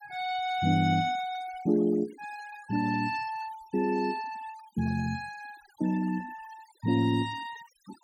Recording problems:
noise reduction artefacts; signal-to-artefact ratio 18 dB

